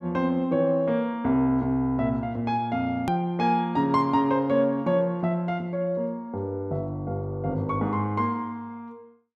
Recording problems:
hard cut with a click; at 3 s

